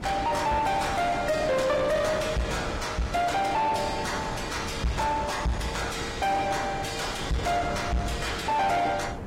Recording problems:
codec artefacts; AAC, log-spectral distance 3 dB, nothing above 15.5 kHz
distortion; soft clipping, signal-to-distortion ratio 6 dB
wind on the microphone; below 550 Hz, SNR 11 dB

